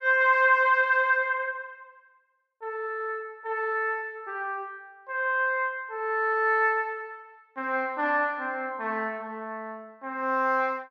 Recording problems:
none

